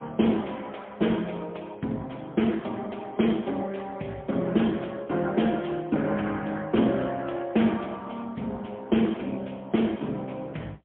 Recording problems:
telephone audio; 86 Hz to 3.4 kHz, AMR-NB, then MP3

